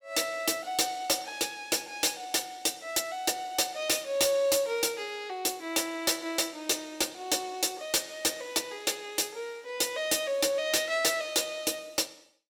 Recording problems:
distorted audio; hard clipping, signal-to-distortion ratio 11 dB

